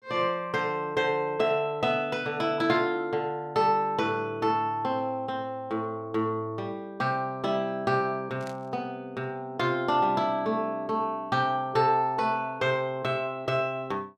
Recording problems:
static burst; at 8.5 s; peak -13 dB vs average level

